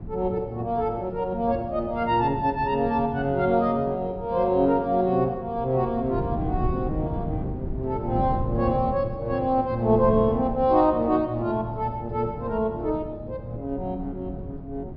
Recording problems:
treble cut off; nothing above 5.5 kHz
wind noise; below 210 Hz, SNR 10 dB

